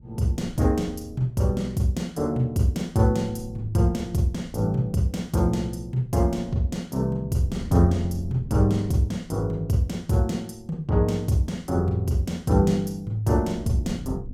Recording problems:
wind noise; below 160 Hz, SNR 18 dB

